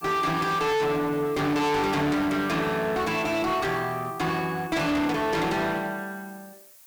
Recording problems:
distorted audio; hard clipping, uneven, signal-to-distortion ratio 6 dB
background hiss; slope +2 dB per octave, SNR 24 dB

